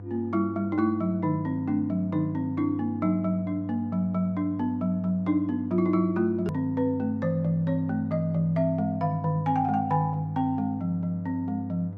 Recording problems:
electrical hum; 50 Hz, harmonics up to 700 Hz, SNR 13 dB
click at an edit; at 6.5 s

